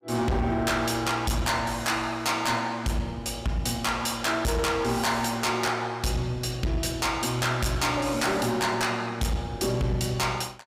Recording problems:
distorted audio; hard clipping, signal-to-distortion ratio 7 dB

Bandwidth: 15.5 kHz